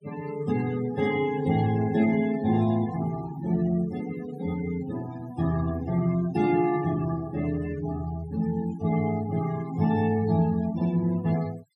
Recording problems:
denoising artefacts; signal-to-artefact ratio 17 dB

